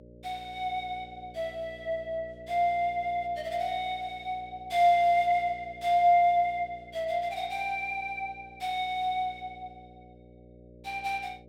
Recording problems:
electrical hum; 60 Hz, harmonics up to 600 Hz, SNR 23 dB

